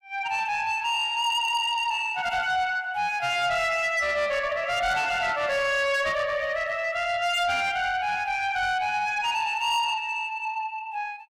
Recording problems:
distortion; soft clipping, signal-to-distortion ratio 11 dB

